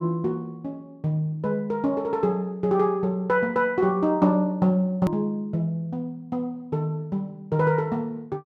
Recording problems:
click at an edit; at 5 s

